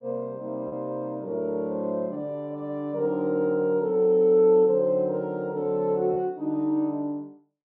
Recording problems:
lost packets; 0.8% of the sound replaced, filled with repeated pitch periods

